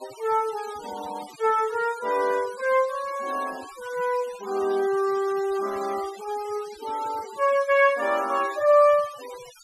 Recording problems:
noise reduction artefacts; signal-to-artefact ratio 19 dB

